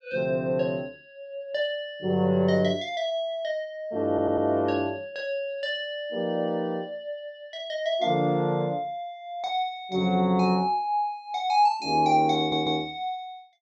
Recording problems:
audio stuttering; at 4 s and at 12 s

